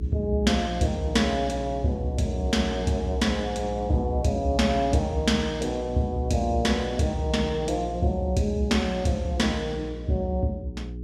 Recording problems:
hum; 60 Hz, harmonics up to 420 Hz, SNR 10 dB

